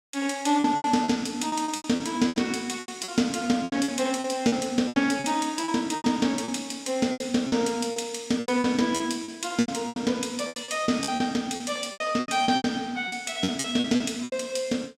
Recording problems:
packet loss; 16% of the sound replaced, filled with repeated pitch periods

